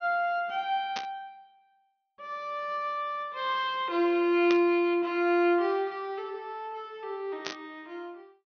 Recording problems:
low-pass filter; nothing above 6.3 kHz
static burst; at 1 s, at 4.5 s and at 7.5 s; peak -2 dB vs average level

